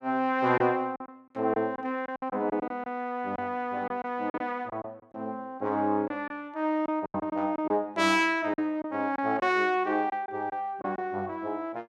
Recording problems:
lost packets; 8% of the sound replaced, filled with silence

